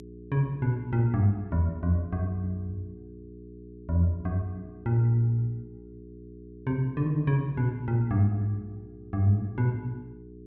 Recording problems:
electrical hum; 60 Hz, harmonics up to 420 Hz, SNR 18 dB

